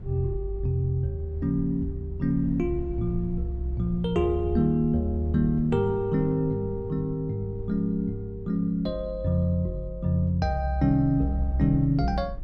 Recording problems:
rumble; below 76 Hz, SNR 14 dB

